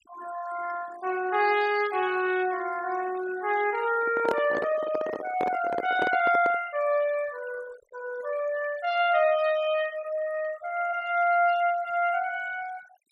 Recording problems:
denoising artefacts; signal-to-artefact ratio 18 dB
handling noise; from 4 to 6.5 s; peak +2 dB vs average level

